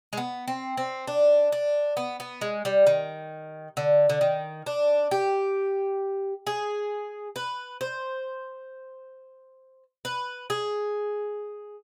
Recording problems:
none

